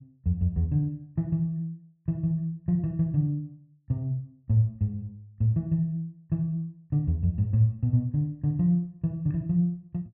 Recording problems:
none

